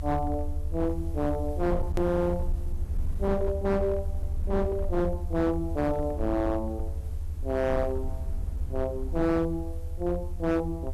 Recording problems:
distorted audio; hard clipping, signal-to-distortion ratio 12 dB
background hiss; slope -3 dB per octave, SNR 29 dB
low-frequency rumble; below 78 Hz, strongest tone 22 Hz, SNR 5 dB
click at an edit; at 2 s

